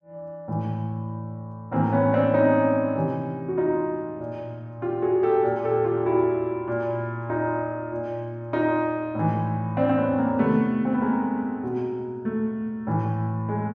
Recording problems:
none

